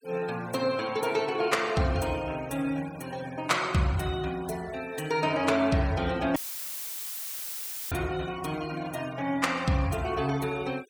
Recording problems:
noise reduction artefacts; signal-to-artefact ratio 19 dB
audio cutting out; at 6.5 s for 1.5 s; filled with static

